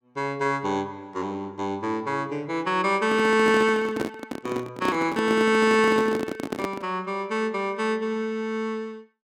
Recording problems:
handling noise; from 3 to 7 s; peak +1 dB vs average level

